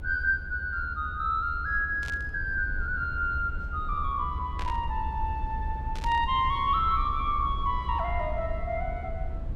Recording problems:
rumble; below 74 Hz, SNR 7 dB
static burst; at 2 s, at 4.5 s and at 6 s; peak -7 dB vs average level

